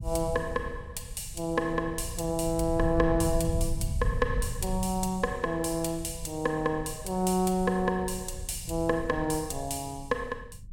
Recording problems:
low-frequency rumble; below 100 Hz, SNR 8 dB

